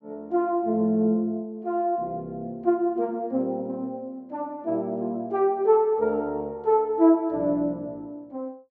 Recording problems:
none

